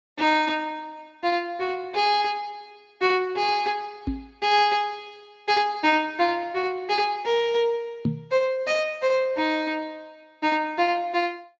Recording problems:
lossy compression; Speex, log-spectral distance 2 dB
microphone thump; at 4 s and at 8 s; peak +3 dB vs average level

